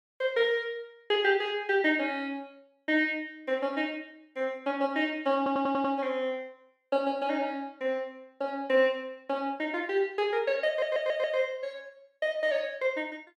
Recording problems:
audio stuttering; at 5.5 s and at 11 s

